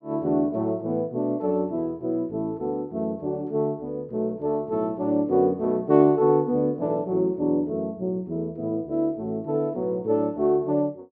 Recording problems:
none

